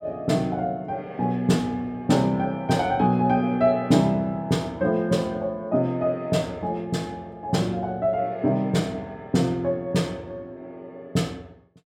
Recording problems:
none

